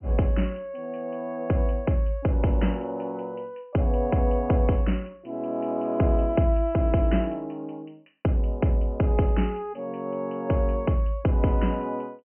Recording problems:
treble cut off; nothing above 3 kHz

